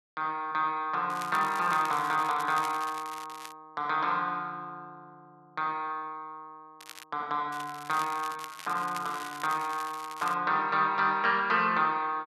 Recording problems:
crackling; from 1 to 3.5 s, at 7 s and from 7.5 to 10 s; loose cable, SNR 16 dB

